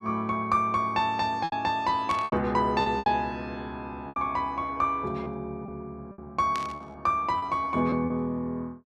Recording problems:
lost packets; 8% of the sound replaced, filled with repeated pitch periods
static burst; at 2 s and at 6.5 s; peak -5 dB vs average level

